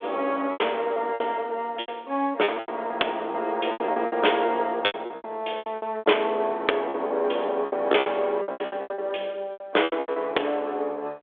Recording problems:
telephone audio; 300 Hz to 3.6 kHz, G.726
lost packets; 17% of the sound replaced, filled with repeated pitch periods

